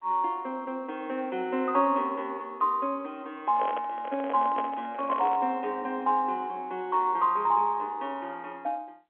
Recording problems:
telephone audio; 240 Hz to 3.4 kHz, G.711
handling noise; from 3.5 to 5.5 s; peak -2 dB vs average level

